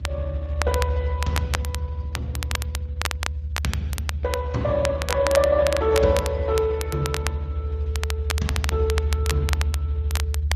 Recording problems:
codec artefacts; Speex, then Opus, log-spectral distance 2 dB
low-frequency rumble; below 76 Hz, strongest tone 74 Hz, SNR 3 dB
crackle; vinyl, SNR 7 dB

